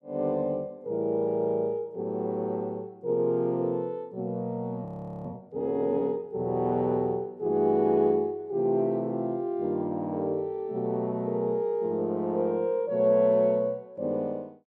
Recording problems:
frozen audio; at 5 s

